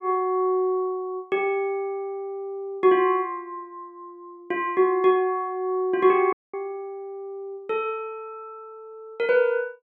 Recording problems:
audio cutting out; at 6.5 s

